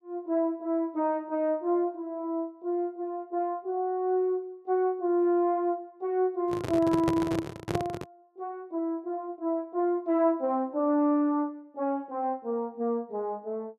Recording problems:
handling noise; from 6.5 to 8 s; peak +3 dB vs average level

